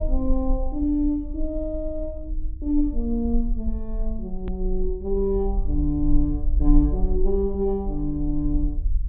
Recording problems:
treble cut off; nothing above 4 kHz
low-frequency rumble; below 42 Hz, SNR 3 dB
click at an edit; at 4.5 s

